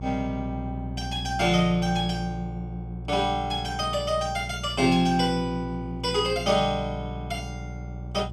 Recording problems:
hum; 60 Hz, harmonics up to 600 Hz, SNR 10 dB

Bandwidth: 15.5 kHz